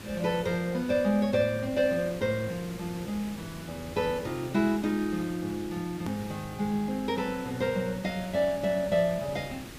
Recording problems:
hiss; SNR 14 dB
edit click; at 6 s

